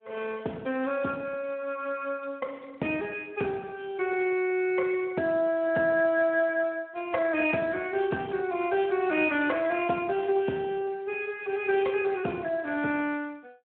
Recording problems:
telephone audio; 240 Hz to 3.6 kHz, Speex

